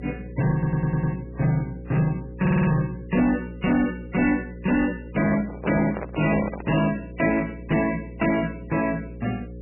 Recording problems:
lossy compression; MP3, log-spectral distance 4 dB, nothing above 2.8 kHz
distortion; hard clipping, uneven, signal-to-distortion ratio 10 dB
electrical hum; 60 Hz, harmonics up to 540 Hz, SNR 15 dB
audio stuttering; at 0.5 s and at 2.5 s
microphone handling noise; from 5 to 7 s; peak 0 dB vs average level

